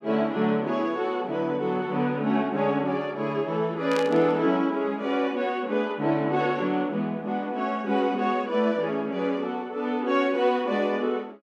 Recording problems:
static burst; at 4 s; peak -6 dB vs average level

